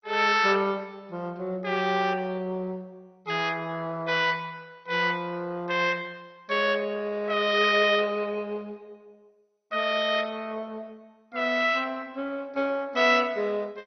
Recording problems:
codec artefacts; MP2, log-spectral distance 4 dB, nothing above 5.8 kHz

